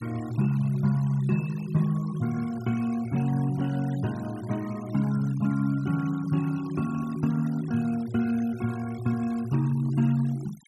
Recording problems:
denoising artefacts; signal-to-artefact ratio 21 dB

